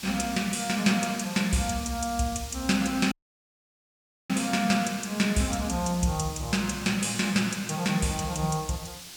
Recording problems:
background hiss; SNR 13 dB
dropout; at 3 s for 1 s

